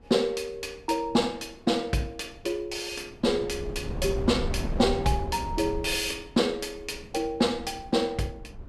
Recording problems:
wind on the microphone; below 200 Hz, SNR 8 dB

